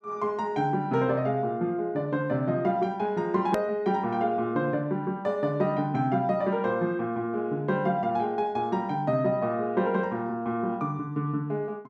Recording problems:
edit click; at 3.5 s

